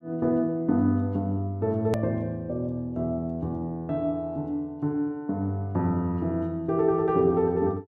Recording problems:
click at an edit; at 2 s

